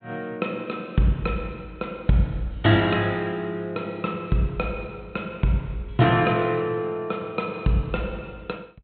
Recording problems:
treble cut off; nothing above 4 kHz

